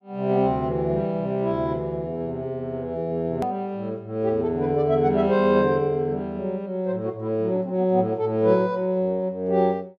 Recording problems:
click at an edit; at 3.5 s

